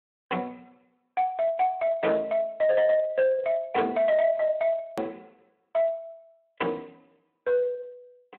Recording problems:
phone line; 220 Hz to 3.9 kHz, Speex
distortion; soft clipping, signal-to-distortion ratio 11 dB
edit click; at 5 s

